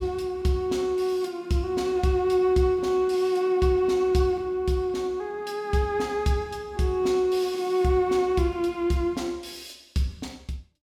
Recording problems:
none

